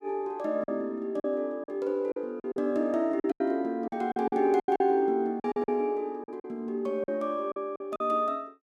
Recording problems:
lost packets; 11% of the sound replaced, filled with silence

